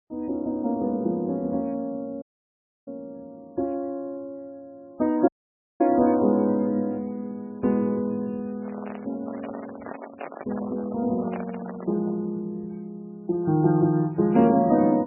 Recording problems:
lossy compression; MP3, log-spectral distance 2 dB, nothing above 2.4 kHz
audio cutting out; at 2 s for 0.5 s and at 5.5 s for 0.5 s
microphone handling noise; from 8.5 to 12 s; peak -8 dB vs average level

